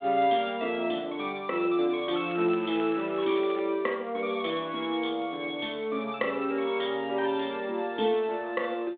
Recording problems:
telephone audio; 240 Hz to 3.6 kHz, G.726
crackling; from 2.5 to 3.5 s; loose cable, SNR 19 dB

